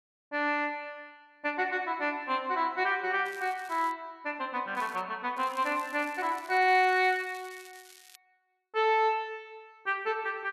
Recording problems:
crackling; at 3.5 s, at 5 s and from 5.5 to 8 s; loose cable, SNR 23 dB

